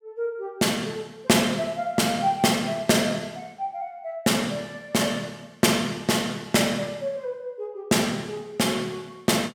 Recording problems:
none

